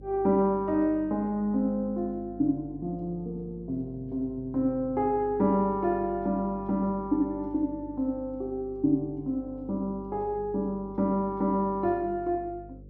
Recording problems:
electrical hum; 50 Hz, harmonics up to 550 Hz, SNR 19 dB

